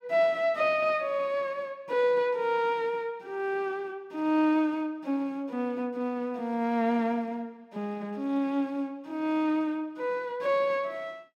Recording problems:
none

